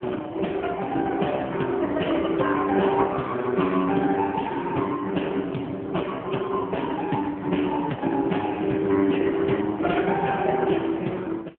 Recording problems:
phone line; 150 Hz to 3.4 kHz, AMR-NB

